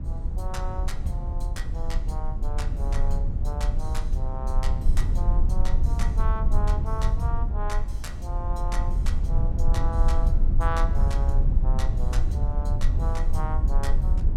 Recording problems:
rumble; below 62 Hz, SNR -9 dB
wind noise; below 610 Hz, SNR 20 dB

